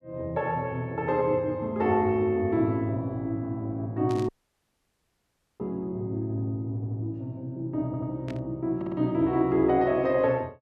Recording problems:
static burst; at 4 s and at 8.5 s; peak -13 dB vs average level
dropout; at 4.5 s for 1.5 s
stutter; at 7 s, at 8 s and at 9 s

